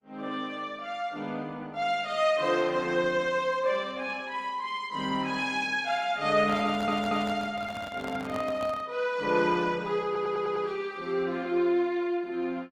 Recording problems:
codec artefacts; Opus, log-spectral distance 2 dB, nothing above 17.7 kHz
microphone handling noise; from 6.5 to 9 s; peak -6 dB vs average level
stutter; at 6.5 s and at 10 s

